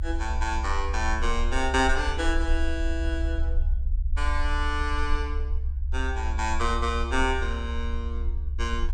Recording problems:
rumble; below 66 Hz, SNR 1 dB

